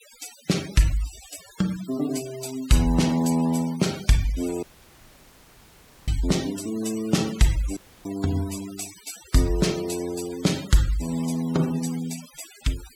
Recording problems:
denoising artefacts; signal-to-artefact ratio 15 dB
audio cutting out; at 4.5 s for 1.5 s and at 8 s

